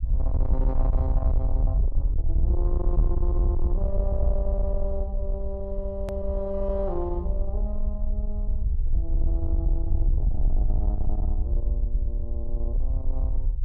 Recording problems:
distorted audio; soft clipping, signal-to-distortion ratio 11 dB
rumble; below 62 Hz, SNR -7 dB
click at an edit; at 6 s

